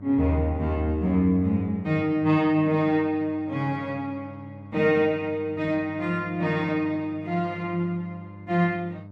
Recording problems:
hum; 50 Hz, harmonics up to 900 Hz, SNR 17 dB

